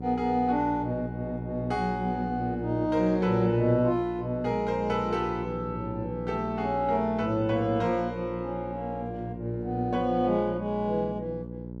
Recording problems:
hum; 60 Hz, harmonics up to 600 Hz, SNR 9 dB

